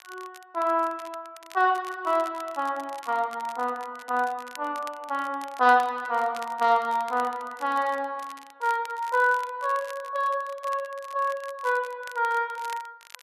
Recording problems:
crackle; vinyl, SNR 21 dB

